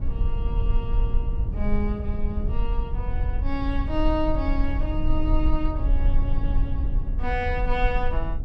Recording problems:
rumble; below 54 Hz, SNR -3 dB

